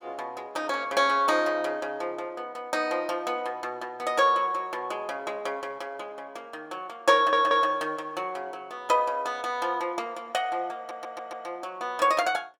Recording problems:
stutter; at 7 s and at 11 s

